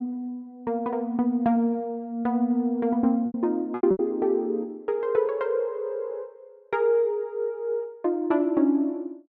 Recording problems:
lost packets; 3% of the sound replaced, filled with repeated pitch periods

